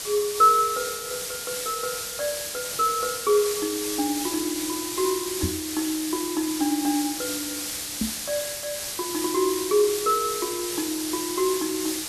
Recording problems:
hiss; slope +1 dB per octave, SNR 3 dB
knock on the microphone; at 5.5 s and at 8 s; peak +3 dB vs average level

